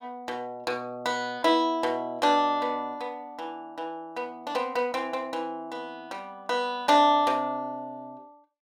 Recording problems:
none

